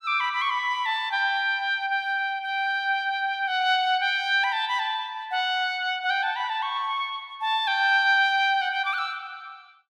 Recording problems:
none

